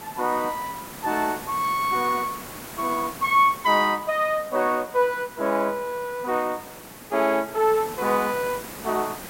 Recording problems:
hiss; slope -4 dB per octave, SNR 14 dB

